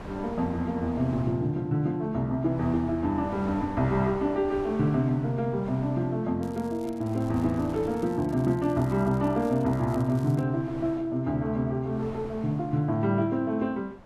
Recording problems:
wind on the microphone; below 880 Hz, SNR 17 dB
crackle; from 6.5 to 10 s; loose cable, SNR 27 dB

